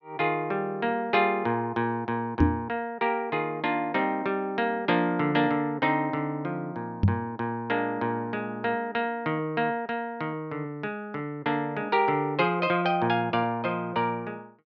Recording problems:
treble cut off; nothing above 6.4 kHz
microphone bump; at 2.5 s and at 7 s; peak +10 dB vs average level

